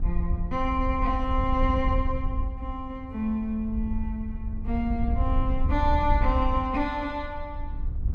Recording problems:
wind on the microphone; below 74 Hz, SNR 1 dB

